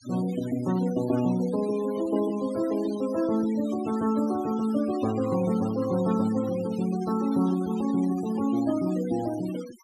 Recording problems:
noise reduction artefacts; signal-to-artefact ratio 18 dB

